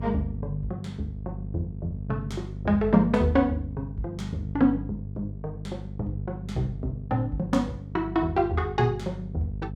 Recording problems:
hum; 50 Hz, harmonics up to 450 Hz, SNR 9 dB

